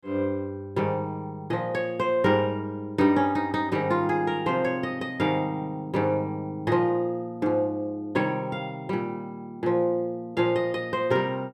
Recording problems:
none

